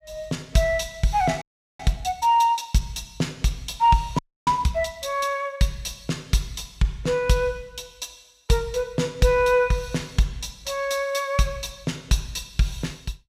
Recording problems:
audio freezing; at 1.5 s and at 4 s

